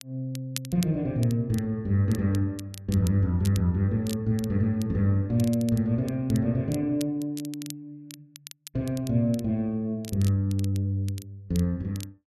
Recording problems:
crackling; vinyl, SNR 18 dB

